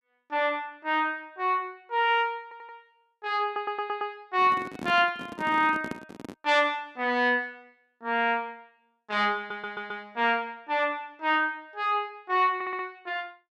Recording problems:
audio stuttering; 4 times, first at 2.5 s
handling noise; from 4.5 to 6.5 s; peak -4 dB vs average level

